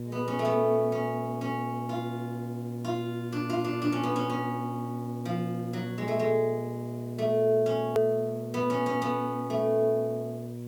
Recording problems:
hum; 60 Hz, harmonics up to 600 Hz, SNR 7 dB
background hiss; slope -1 dB per octave, SNR 27 dB
hard cut with a click; at 8 s

